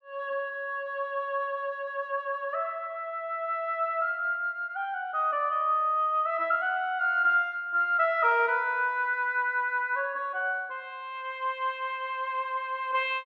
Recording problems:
none

